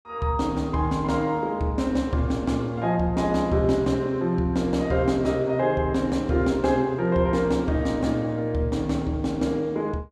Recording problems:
none

